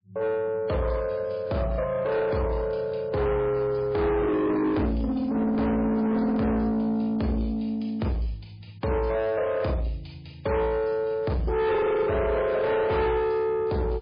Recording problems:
lossy codec; MP3, log-spectral distance 2 dB
distortion; soft clipping, signal-to-distortion ratio 8 dB

